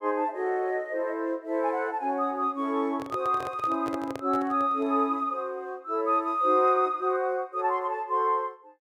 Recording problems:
handling noise; from 3 to 5 s; peak -6 dB vs average level

